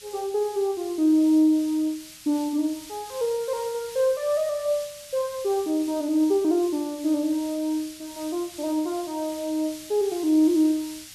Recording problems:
hiss; slope +5 dB per octave, SNR 17 dB

